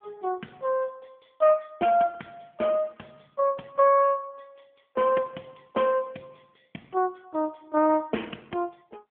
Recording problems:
phone line; 220 Hz to 3.3 kHz, AMR-NB

